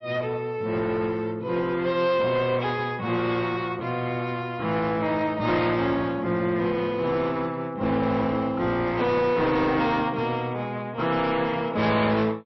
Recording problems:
lossy compression; MP3, log-spectral distance 2 dB, nothing above 5.7 kHz
distortion; hard clipping, uneven, signal-to-distortion ratio 9 dB

